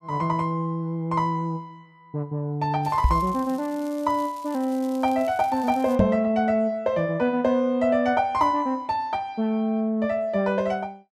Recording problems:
crackle; from 3 to 6 s; loose cable, SNR 24 dB
microphone thump; at 3 s and at 6 s; peak +8 dB vs average level

